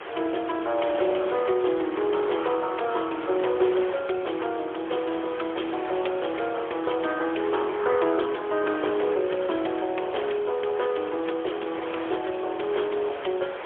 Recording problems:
phone line; 320 Hz to 3.4 kHz, AMR-NB, then MP3
background hiss; SNR 21 dB
wind noise; below 1.8 kHz, SNR 12 dB

